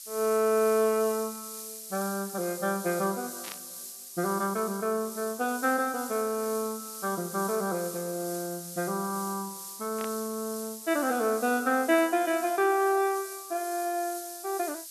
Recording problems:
hiss; SNR 10 dB
burst of static; at 3.5 s and at 10 s; peak -8 dB vs average level

